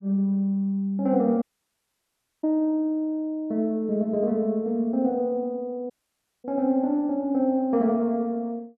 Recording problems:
audio cutting out; at 1.5 s for 1 s and at 6 s for 0.5 s

